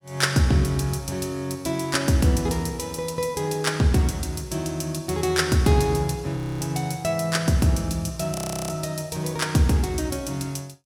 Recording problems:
frozen audio; at 6.5 s and at 8.5 s

